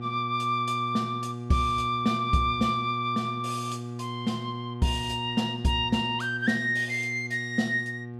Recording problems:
hum; 60 Hz, harmonics up to 1.2 kHz, SNR 9 dB

